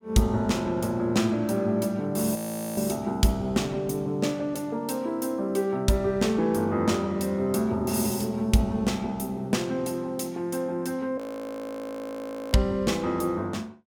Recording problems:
audio freezing; at 2.5 s and at 11 s for 1.5 s

